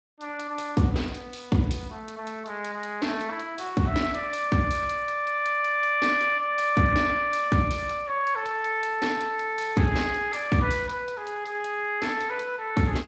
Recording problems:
lossy compression; Speex, log-spectral distance 5 dB, nothing above 7.6 kHz

